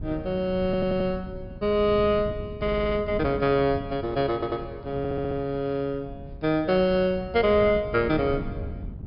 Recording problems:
treble cut off; nothing above 5.5 kHz
wind noise; below 190 Hz, SNR 13 dB
audio stuttering; 4 times, first at 0.5 s

